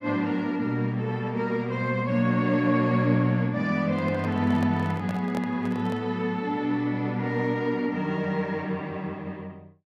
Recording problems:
microphone handling noise; from 4 to 6 s; peak -5 dB vs average level

